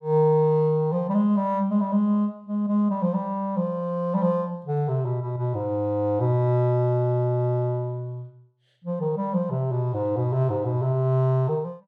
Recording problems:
none

